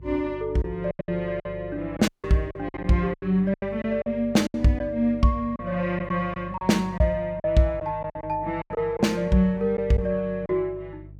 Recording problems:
electrical hum; 50 Hz, harmonics up to 450 Hz, SNR 18 dB
lost packets; 10% of the sound replaced, filled with silence
dropout; at 2 s

